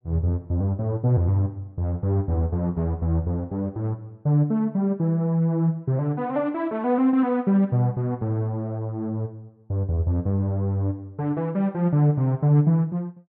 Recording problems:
none

